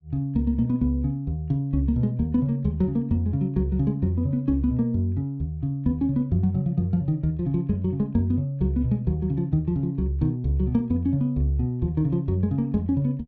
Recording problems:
none

